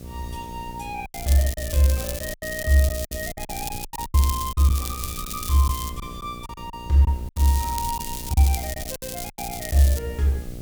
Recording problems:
hum; 60 Hz, harmonics up to 840 Hz, SNR 17 dB
hiss; slope +3 dB per octave, SNR 24 dB
low-frequency rumble; below 100 Hz, SNR 18 dB
lost packets; 10% of the sound replaced, filled with silence
crackling; from 1 to 6 s and from 7.5 to 10 s; loose cable, SNR 9 dB

